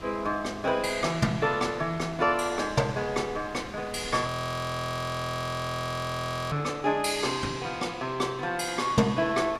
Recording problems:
wind noise; below 1.9 kHz, SNR 17 dB
audio freezing; at 4.5 s for 2.5 s

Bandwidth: 14.5 kHz